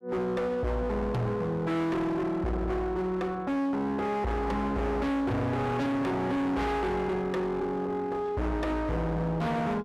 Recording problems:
distorted audio; hard clipping, uneven, signal-to-distortion ratio 6 dB

